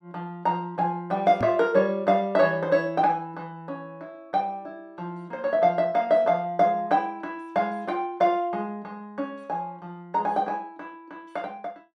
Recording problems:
microphone thump; at 1.5 s; peak -3 dB vs average level

